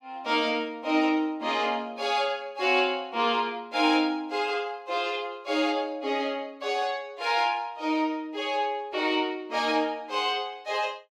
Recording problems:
none

